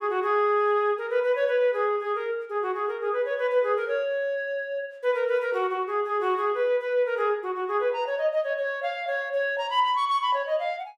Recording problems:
none

